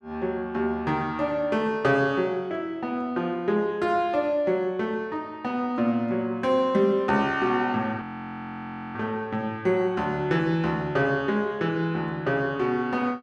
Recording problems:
audio freezing; at 8 s for 1 s

